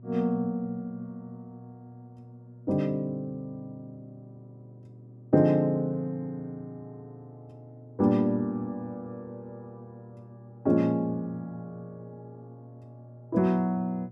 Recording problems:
hum; 60 Hz, harmonics up to 600 Hz, SNR 20 dB

